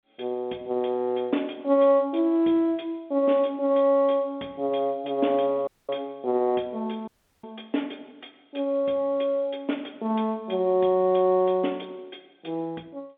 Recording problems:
telephone audio; 190 Hz to 3.6 kHz, G.711
dropout; at 5.5 s and at 7 s

